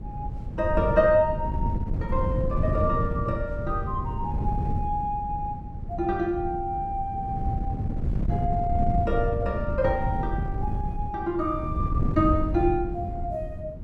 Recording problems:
wind noise; below 140 Hz, SNR 2 dB

